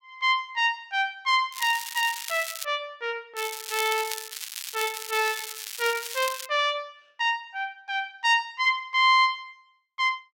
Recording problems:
crackling; from 1.5 to 2.5 s and from 3.5 to 6.5 s; loose cable, SNR 9 dB

